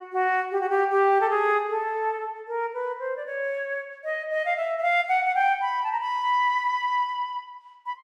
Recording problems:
none

